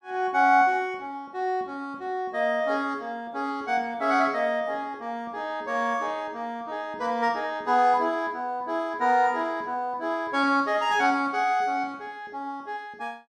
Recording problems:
none

